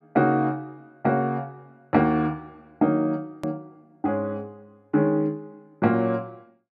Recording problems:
edit click; at 3.5 s

